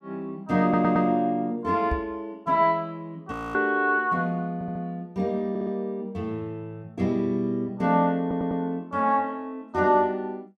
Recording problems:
audio stuttering; 4 times, first at 0.5 s
microphone bump; at 2 s; peak 0 dB vs average level
audio freezing; at 3.5 s

